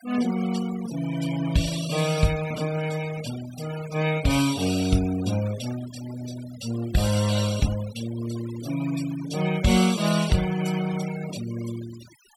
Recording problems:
denoising artefacts; signal-to-artefact ratio 13 dB

